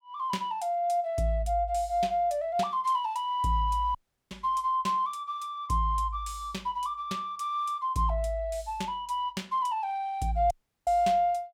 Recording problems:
dropout; at 4 s and at 11 s

